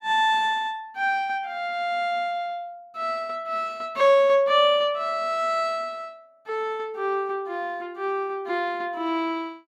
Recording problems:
none

